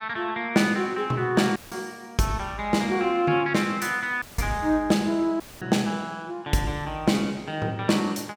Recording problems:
dropout; at 1.5 s, at 4 s and at 5.5 s; filled with static

